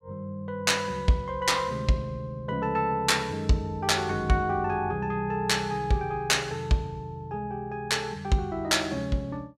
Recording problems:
none

